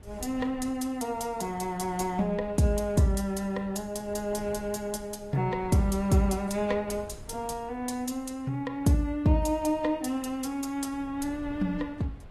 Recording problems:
lossy codec; AAC, log-spectral distance 2 dB
wind on the microphone; below 190 Hz, SNR 19 dB

